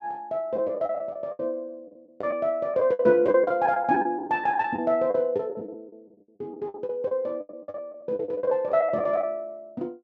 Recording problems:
lost packets; 15% of the sound replaced, filled with the last packet

